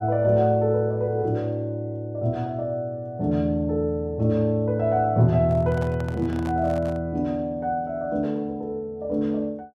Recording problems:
microphone handling noise; from 5.5 to 7 s; peak -10 dB vs average level

